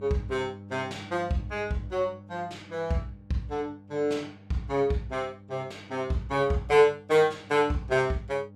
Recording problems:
electrical hum; 50 Hz, harmonics up to 800 Hz, SNR 20 dB

